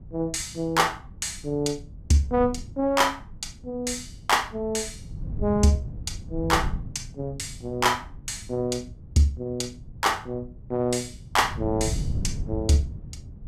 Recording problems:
wind noise; below 140 Hz, SNR 11 dB

